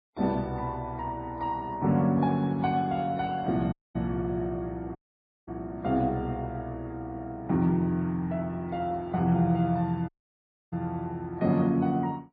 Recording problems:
lossy codec; MP2, then MP3, log-spectral distance 2 dB
dropout; at 3.5 s, at 5 s for 0.5 s and at 10 s for 0.5 s

